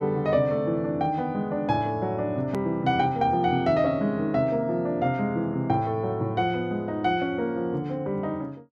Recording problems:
hard cut with a click; at 2.5 s

